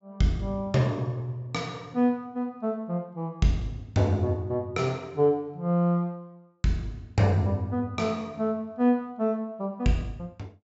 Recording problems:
treble cut off; nothing above 8 kHz

